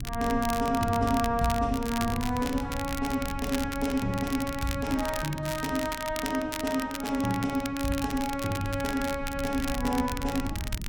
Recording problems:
low-frequency rumble; below 120 Hz, SNR 11 dB
crackling; vinyl, SNR 10 dB

